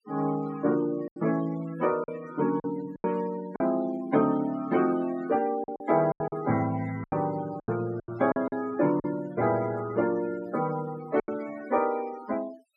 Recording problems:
noise reduction artefacts; signal-to-artefact ratio 17 dB
lost packets; 7% of the sound replaced, filled with silence

